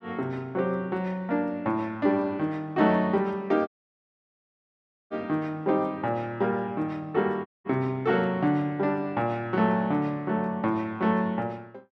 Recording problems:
audio cutting out; at 3.5 s for 1.5 s and at 7.5 s

